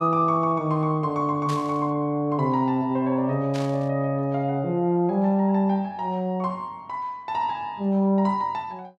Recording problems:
static burst; at 1.5 s and at 3.5 s; peak -9 dB vs average level

